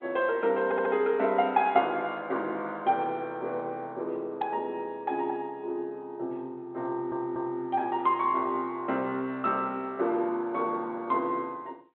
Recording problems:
telephone audio; 280 Hz to 3.4 kHz, G.726
stutter; at 0.5 s and at 7 s

